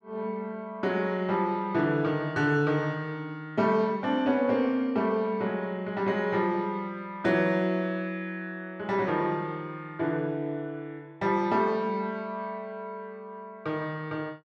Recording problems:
none

